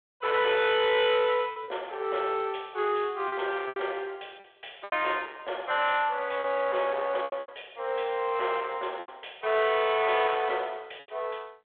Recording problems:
phone line; 320 Hz to 3.5 kHz, G.726
distorted audio; soft clipping, signal-to-distortion ratio 12 dB
lost packets; 6% of the sound replaced, filled with repeated pitch periods

